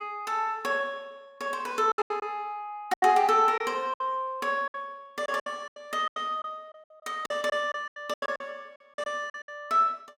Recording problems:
lost packets; 12% of the sound replaced, filled with silence

